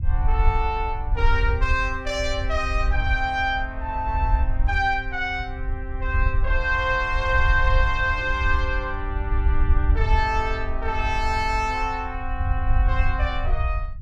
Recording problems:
low-frequency rumble; below 66 Hz, SNR 1 dB

